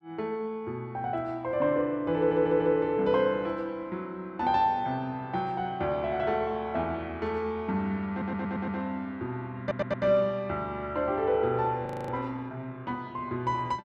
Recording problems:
audio stuttering; at 2 s, at 8 s and at 9.5 s
frozen audio; at 12 s

